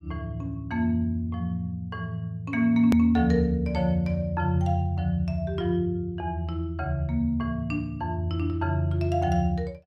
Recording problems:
hard cut with a click; at 3 s

